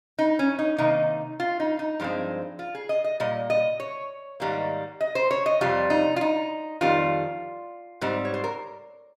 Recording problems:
none

